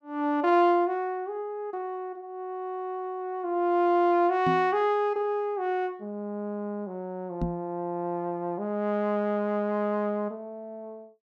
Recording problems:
knock on the microphone; at 4.5 s and at 7.5 s; peak +2 dB vs average level

